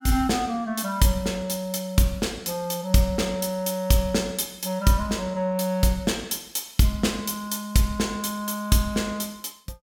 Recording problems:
none

